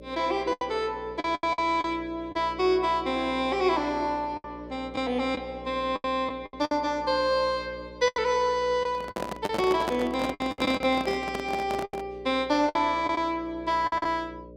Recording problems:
electrical hum; 60 Hz, harmonics up to 600 Hz, SNR 17 dB
packet loss; 9% of the sound replaced, filled with the last packet
microphone handling noise; from 9 to 12 s; peak +1 dB vs average level

